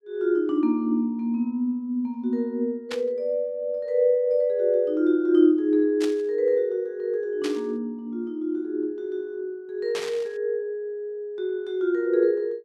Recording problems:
burst of static; 4 times, first at 3 s; peak -5 dB vs average level

